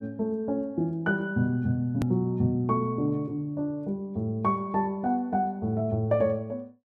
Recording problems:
edit click; at 2 s

